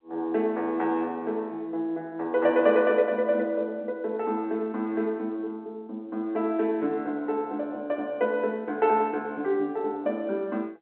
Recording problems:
telephone audio; 240 Hz to 3.6 kHz, G.711

